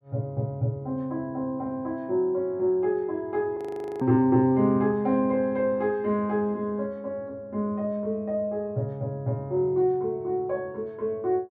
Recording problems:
frozen audio; at 3.5 s

